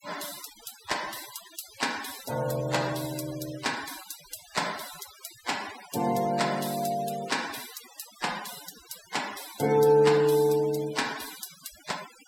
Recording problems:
denoising artefacts; signal-to-artefact ratio 13 dB

